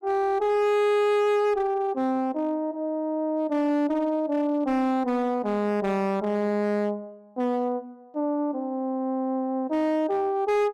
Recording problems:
distortion; hard clipping, uneven, signal-to-distortion ratio 10 dB

